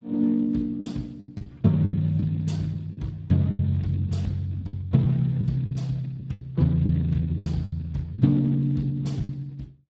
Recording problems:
lossy codec; Speex, log-spectral distance 2 dB, nothing above 7.6 kHz
packet loss; 10% of the sound replaced, filled with the last packet

